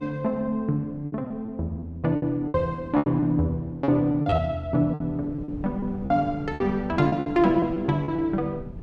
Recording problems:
wind noise; below 210 Hz, SNR 16 dB
packet loss; 12% of the sound replaced, filled with repeated pitch periods

